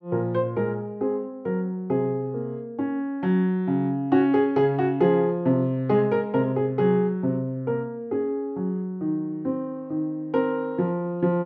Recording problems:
none

